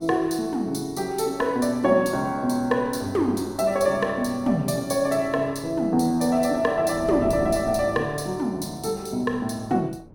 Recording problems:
wind on the microphone; below 330 Hz, SNR 19 dB

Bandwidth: 17 kHz